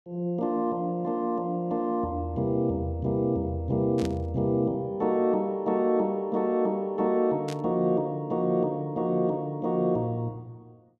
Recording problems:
burst of static; at 4 s and at 7.5 s; peak -9 dB vs average level

